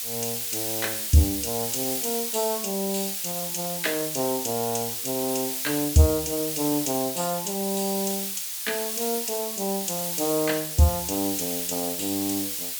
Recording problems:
background hiss; slope +5 dB per octave, SNR 1 dB

